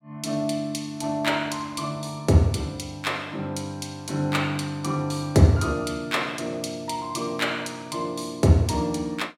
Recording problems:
none

